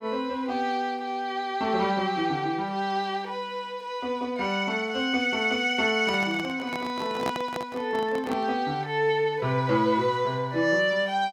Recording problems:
handling noise; from 6 to 8.5 s; peak 0 dB vs average level

